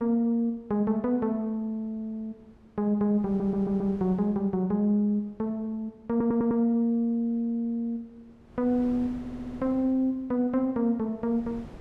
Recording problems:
wind noise; below 440 Hz, SNR 24 dB
stutter; at 3.5 s, at 6 s and at 9 s

